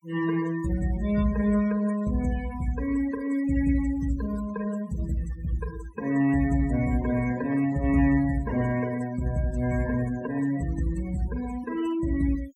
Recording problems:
noise reduction artefacts; signal-to-artefact ratio 17 dB

